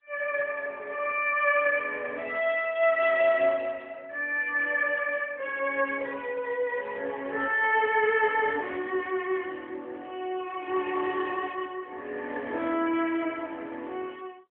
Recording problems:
phone line; 280 Hz to 3.4 kHz, AMR-NB

